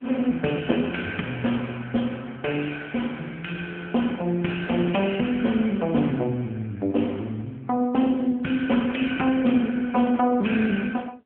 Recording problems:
telephone audio; 170 Hz to 3.3 kHz, AMR-NB

